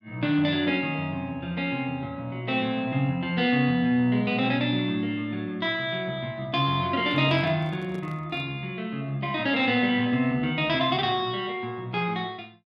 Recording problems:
microphone handling noise; from 7 to 8.5 s; peak -12 dB vs average level

